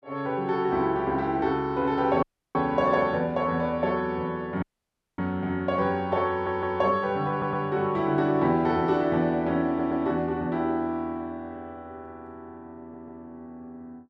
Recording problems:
dropout; at 2 s and at 4.5 s for 0.5 s
stutter; 4 times, first at 6.5 s

